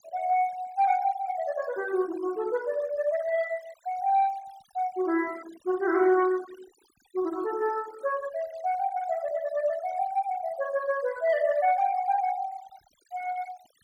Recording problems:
noise reduction artefacts; signal-to-artefact ratio 19 dB

